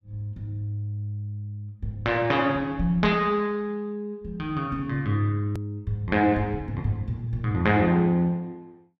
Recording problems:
edit click; at 5.5 s

